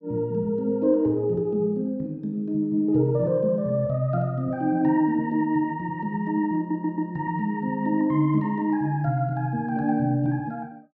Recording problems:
audio stuttering; at 6.5 s

